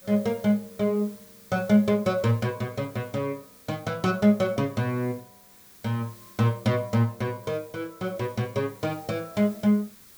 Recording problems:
hiss; SNR 23 dB

